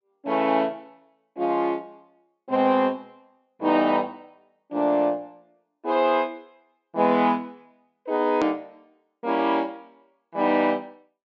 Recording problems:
treble missing; nothing above 8 kHz
edit click; at 8.5 s

